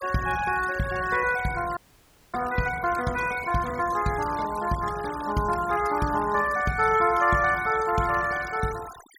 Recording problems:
noise reduction artefacts; signal-to-artefact ratio 15 dB
audio freezing; at 2 s for 0.5 s

